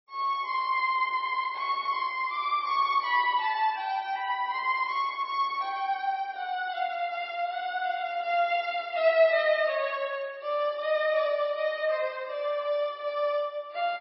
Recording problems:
codec artefacts; AAC, then MP3, log-spectral distance 2 dB, nothing above 5.2 kHz

